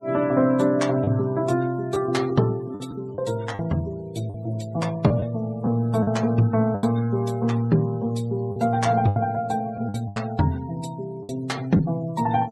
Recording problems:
denoising artefacts; signal-to-artefact ratio 23 dB
packet loss; 6% of the sound replaced, filled with the last packet

